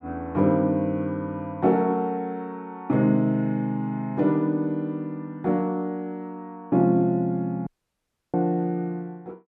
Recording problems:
audio cutting out; at 7.5 s for 0.5 s

